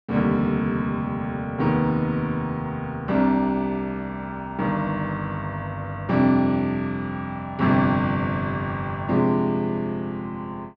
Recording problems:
none

